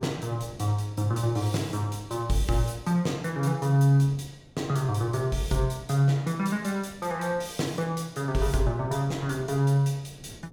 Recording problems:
wind on the microphone; below 310 Hz, SNR 23 dB

